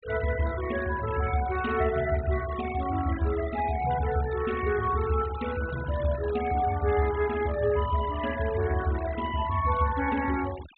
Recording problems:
treble missing; nothing above 4 kHz
denoising artefacts; signal-to-artefact ratio 15 dB

